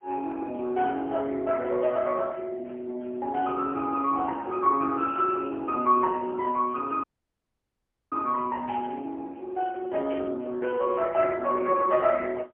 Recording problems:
phone line; 260 Hz to 3 kHz, AMR-NB, then MP3
audio cutting out; at 7 s for 1 s
burst of static; at 8.5 s and at 10 s; peak -12 dB vs average level

